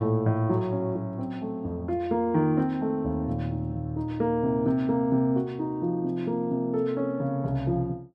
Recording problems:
none

